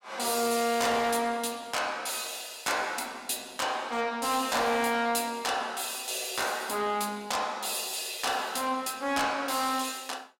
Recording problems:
distorted audio; soft clipping, signal-to-distortion ratio 11 dB

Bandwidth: 16 kHz